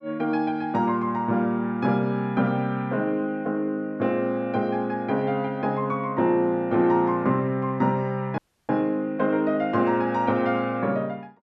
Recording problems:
audio cutting out; at 8.5 s

